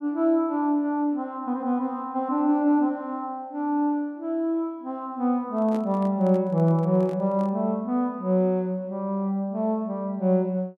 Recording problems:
handling noise; from 5.5 to 7.5 s; peak -10 dB vs average level

